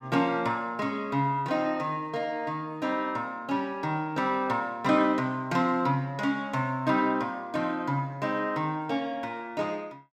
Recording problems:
none

